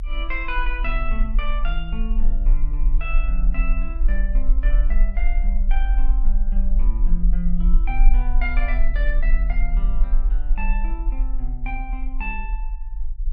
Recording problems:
rumble; below 40 Hz, strongest tone 22 Hz, SNR -8 dB

